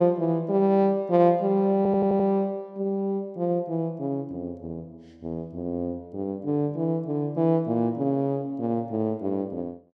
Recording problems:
stutter; at 2 s

